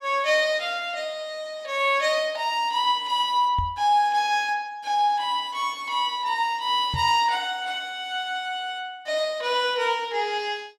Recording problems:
microphone thump; at 3.5 s and at 7 s; peak -2 dB vs average level

